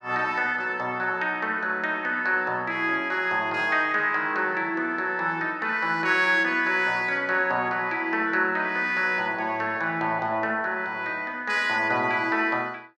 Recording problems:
none

